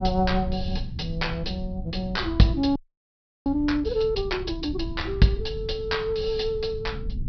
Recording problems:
treble missing; nothing above 5.5 kHz
low-frequency rumble; below 100 Hz, SNR 9 dB
frozen audio; at 3 s for 0.5 s

